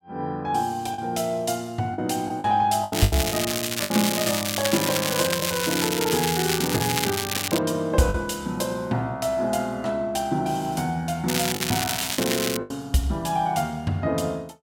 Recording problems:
lost packets; 4% of the sound replaced, filled with the last packet
crackling; from 3 to 7.5 s and from 11 to 13 s; loose cable, SNR 1 dB

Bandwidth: 16.5 kHz